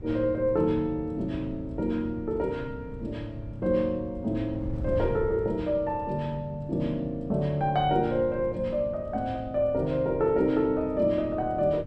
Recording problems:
wind noise; below 140 Hz, SNR 14 dB

